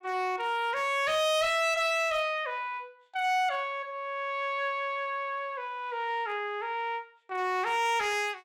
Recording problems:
distorted audio; hard clipping, signal-to-distortion ratio 11 dB

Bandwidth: 16.5 kHz